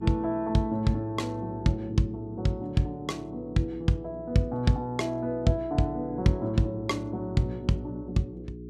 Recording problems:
hum; 60 Hz, harmonics up to 420 Hz, SNR 15 dB

